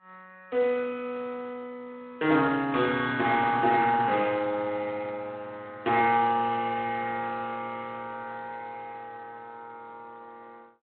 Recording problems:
telephone audio; 280 Hz to 3.7 kHz, Speex

